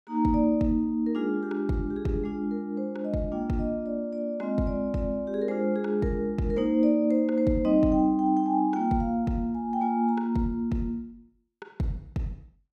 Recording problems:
none

